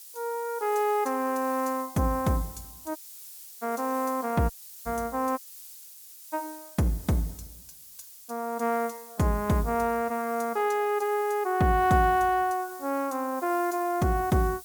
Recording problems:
background hiss; SNR 16 dB
dropout; at 3 s for 0.5 s, at 4.5 s and at 5.5 s for 1 s

